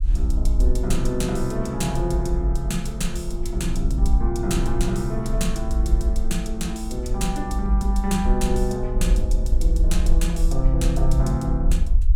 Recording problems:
low-frequency rumble; below 52 Hz, SNR 2 dB

